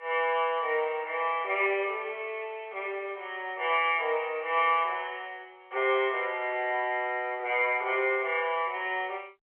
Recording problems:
telephone audio; 340 Hz to 3.5 kHz, G.711

